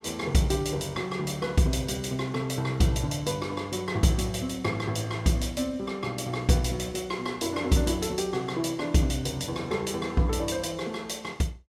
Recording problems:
none

